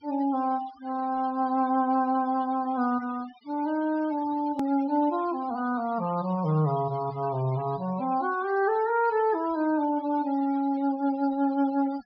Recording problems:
treble cut off; nothing above 5.5 kHz
denoising artefacts; signal-to-artefact ratio 21 dB
edit click; at 4.5 s

